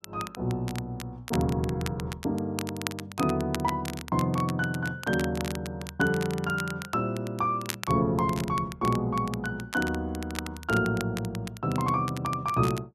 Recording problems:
crackle; vinyl, SNR 12 dB

